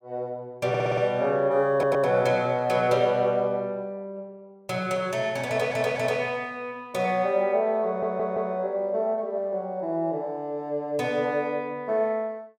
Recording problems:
stutter; 4 times, first at 0.5 s

